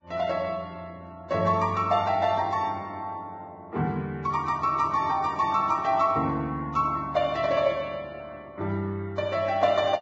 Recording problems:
lossy codec; Vorbis, log-spectral distance 2 dB, nothing above 7.3 kHz

